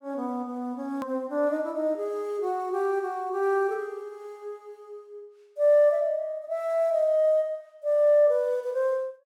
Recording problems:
hard cut with a click; at 1 s

